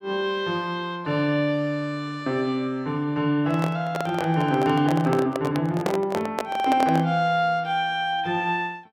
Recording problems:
microphone handling noise; from 3.5 to 7 s; peak +1 dB vs average level

